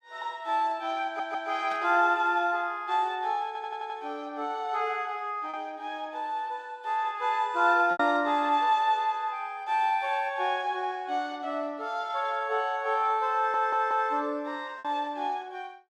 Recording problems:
packet loss; 1.3% of the sound replaced, filled with repeated pitch periods
audio stuttering; at 1 s, at 3.5 s and at 13 s
burst of static; at 1.5 s; peak -14 dB vs average level

